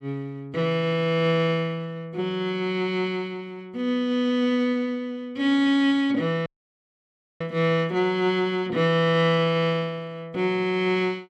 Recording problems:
dropout; at 6.5 s for 1 s

